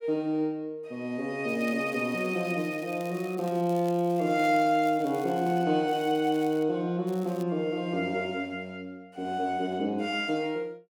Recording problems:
crackle; from 1.5 to 5.5 s, at 6 s and at 7 s; loose cable, SNR 23 dB

